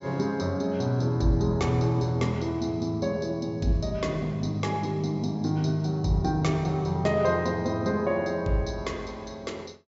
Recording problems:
treble cut off; nothing above 8 kHz

